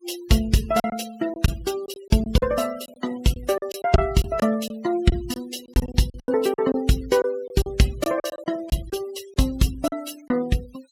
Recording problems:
denoising artefacts; signal-to-artefact ratio 17 dB
lost packets; 10% of the sound replaced, filled with silence

